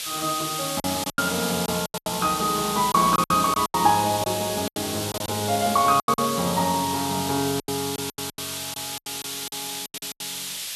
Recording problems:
background hiss; SNR 5 dB
packet loss; 14% of the sound replaced, filled with silence

